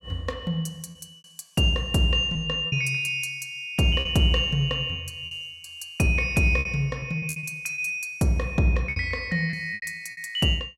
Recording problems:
lost packets; 8% of the sound replaced, filled with repeated pitch periods

